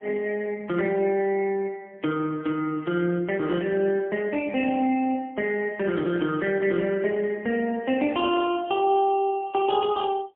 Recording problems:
telephone audio; 260 Hz to 3.5 kHz, AMR-NB, then MP3

